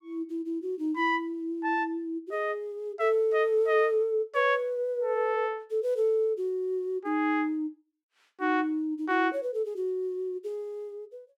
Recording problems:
none

